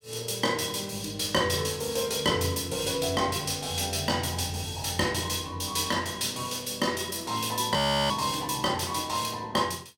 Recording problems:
frozen audio; at 8 s

